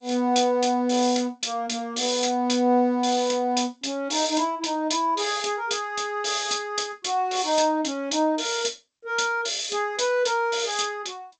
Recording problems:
lossy compression; G.722, log-spectral distance 7 dB

